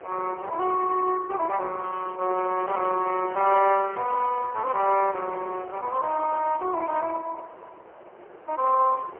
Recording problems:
telephone audio; 320 Hz to 2.9 kHz, AMR-NB, then MP3
wind on the microphone; below 980 Hz, SNR 19 dB
crackle; from 2 to 4.5 s; loose cable, SNR 28 dB

